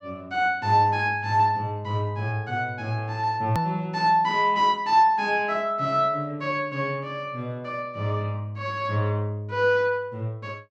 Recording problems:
hard cut with a click; at 3.5 s

